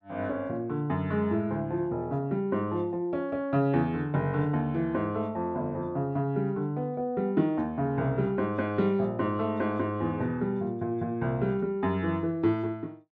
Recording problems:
none

